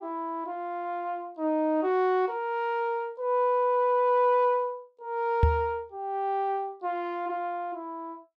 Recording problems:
microphone thump; at 5.5 s; peak +8 dB vs average level

